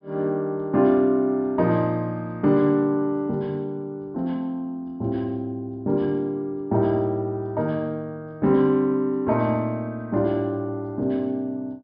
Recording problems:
low-pass filter; nothing above 5.5 kHz

